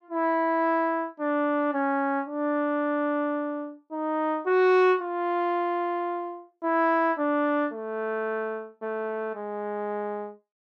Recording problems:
none

